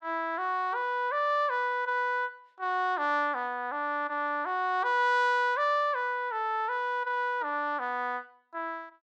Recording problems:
none

